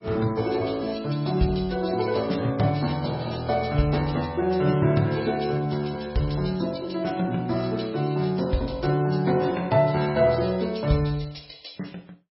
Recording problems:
codec artefacts; MP3, log-spectral distance 5 dB, nothing above 5.5 kHz

